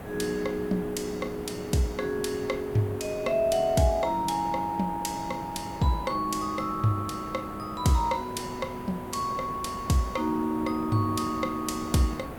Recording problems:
background hiss; SNR 12 dB

